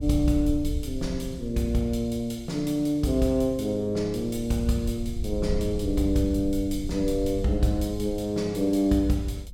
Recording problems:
rumble; below 76 Hz, SNR 10 dB

